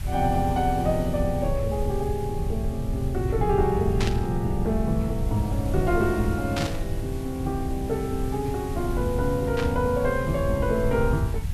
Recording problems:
hiss; slope -2 dB per octave, SNR 18 dB
rumble; below 100 Hz, SNR 4 dB
burst of static; at 4 s, at 6.5 s and at 9.5 s; peak 0 dB vs average level

